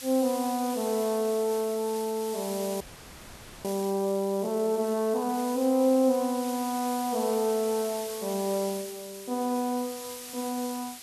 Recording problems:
hiss; slope +2 dB per octave, SNR 12 dB
audio freezing; at 3 s for 1 s

